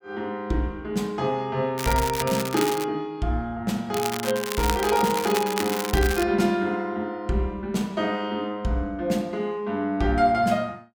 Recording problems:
crackle; from 2 to 3 s and from 4 to 6 s; loose cable, SNR 6 dB

